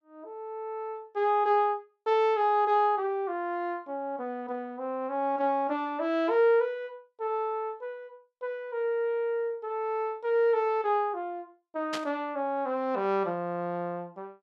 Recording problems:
static burst; at 12 s; peak -1 dB vs average level

